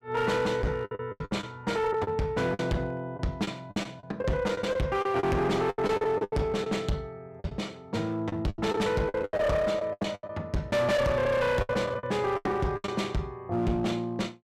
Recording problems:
distortion; hard clipping, uneven, signal-to-distortion ratio 7 dB
lost packets; 13% of the sound replaced, filled with the last packet

